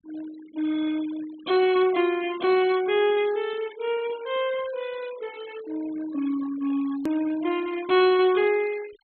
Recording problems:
low-pass filter; nothing above 4.2 kHz
noise reduction artefacts; signal-to-artefact ratio 18 dB
edit click; at 7 s

